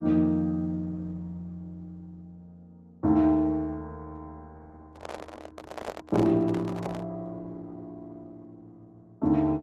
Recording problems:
lossy compression; Opus, log-spectral distance 2 dB
microphone handling noise; from 5 to 7 s; peak -3 dB vs average level

